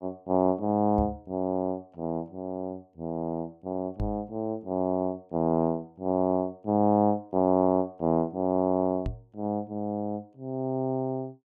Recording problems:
microphone bump; at 1 s, at 4 s and at 9 s; peak 0 dB vs average level

